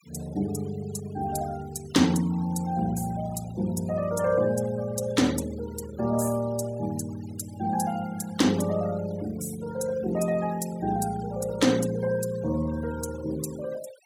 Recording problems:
denoising artefacts; signal-to-artefact ratio 18 dB

